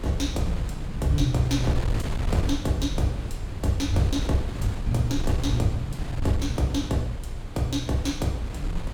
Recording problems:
wind on the microphone; below 130 Hz, SNR 5 dB

